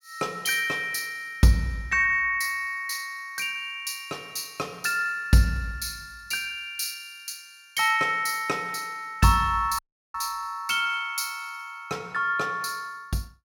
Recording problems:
audio cutting out; at 10 s

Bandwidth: 18 kHz